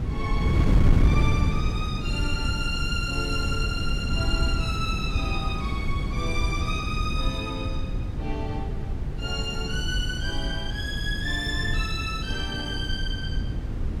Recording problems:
low-frequency rumble; below 100 Hz, SNR 7 dB
wind noise; below 140 Hz, SNR -2 dB

